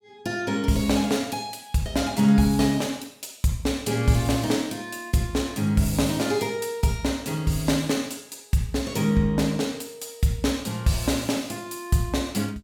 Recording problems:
none

